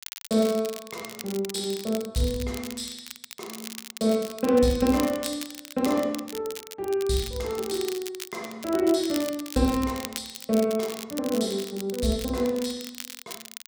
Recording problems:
crackle; vinyl, SNR 12 dB

